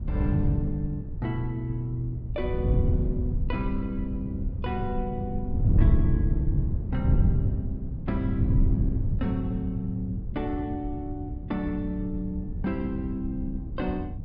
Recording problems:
treble missing; nothing above 5.5 kHz
wind on the microphone; below 120 Hz, SNR -3 dB

